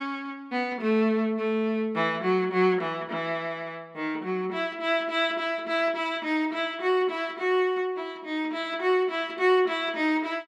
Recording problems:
none

